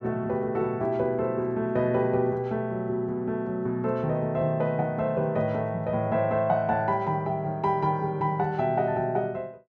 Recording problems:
none

